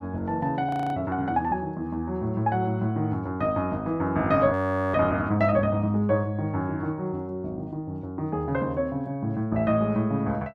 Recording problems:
audio freezing; at 0.5 s and at 4.5 s

